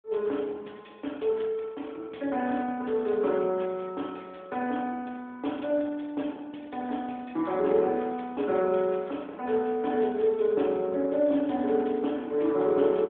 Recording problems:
phone line; 260 Hz to 3.5 kHz, AMR-NB

